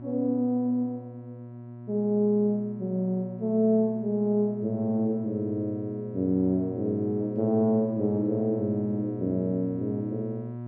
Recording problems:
hum; 60 Hz, harmonics up to 960 Hz, SNR 12 dB

